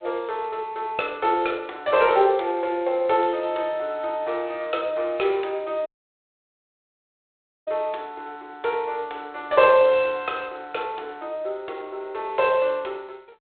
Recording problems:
telephone audio; 340 Hz to 3.9 kHz, G.726
audio cutting out; at 6 s for 2 s

